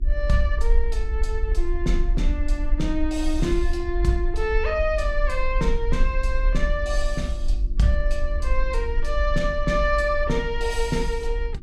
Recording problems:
hum; 50 Hz, harmonics up to 350 Hz, SNR 19 dB
rumble; below 46 Hz, SNR 1 dB

